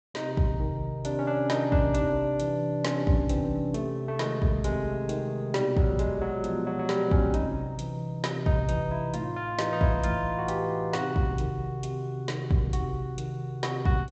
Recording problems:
treble cut off; nothing above 8 kHz

